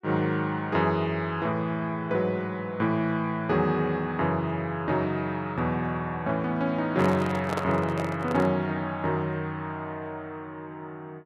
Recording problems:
microphone handling noise; from 7 to 8.5 s; peak +1 dB vs average level

